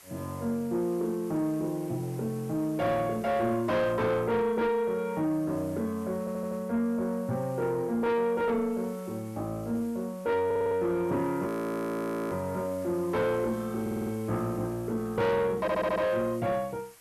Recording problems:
distortion; soft clipping, signal-to-distortion ratio 11 dB
hiss; slope -1 dB per octave, SNR 23 dB
audio stuttering; 4 times, first at 6 s
frozen audio; at 11 s for 1 s

